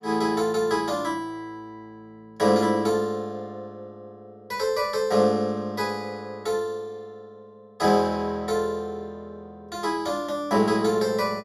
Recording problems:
none

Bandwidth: 14.5 kHz